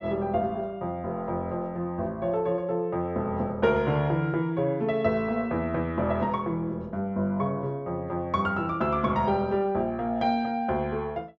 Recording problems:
treble cut off; nothing above 8 kHz

